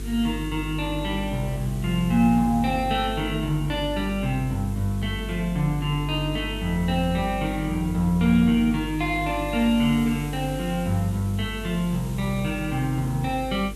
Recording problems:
electrical hum; 50 Hz, harmonics up to 450 Hz, SNR 10 dB
hiss; slope 0 dB per octave, SNR 20 dB

